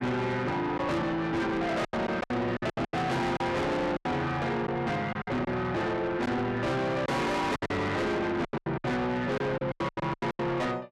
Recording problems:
distortion; soft clipping, signal-to-distortion ratio 6 dB
lost packets; 12% of the sound replaced, filled with silence

